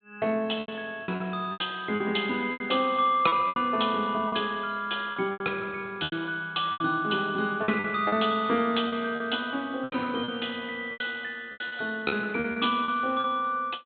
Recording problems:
treble cut off; nothing above 4 kHz
packet loss; 11% of the sound replaced, filled with repeated pitch periods

